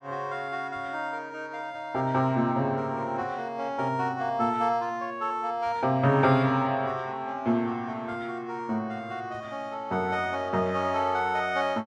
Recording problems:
none

